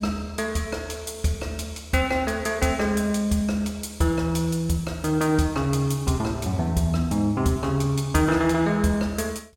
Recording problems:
none

